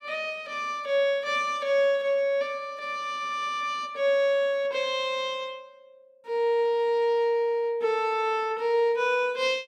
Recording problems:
none

